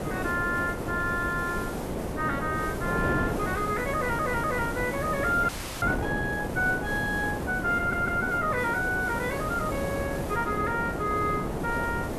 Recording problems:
hiss; slope -5 dB per octave, SNR 14 dB
wind noise; below 600 Hz, SNR 4 dB
audio stuttering; at 4 s and at 8 s
audio freezing; at 5.5 s

